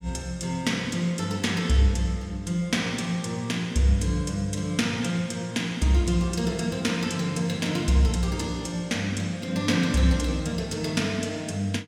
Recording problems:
none

